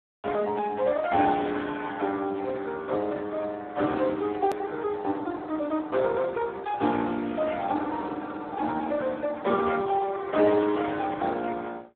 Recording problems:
phone line; 220 Hz to 2.1 kHz, Speex
hard cut with a click; at 4.5 s

